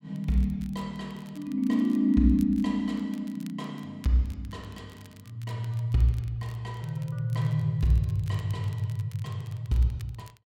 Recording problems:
crackling; vinyl, SNR 27 dB

